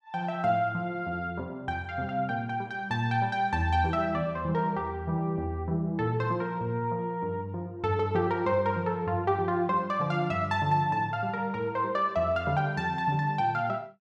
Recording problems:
none

